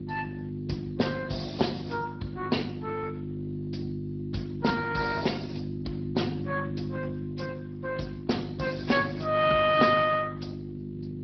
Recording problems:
low-pass filter; nothing above 5.5 kHz
lossy codec; AAC, then Speex, log-spectral distance 4 dB
electrical hum; 50 Hz, harmonics up to 450 Hz, SNR 7 dB

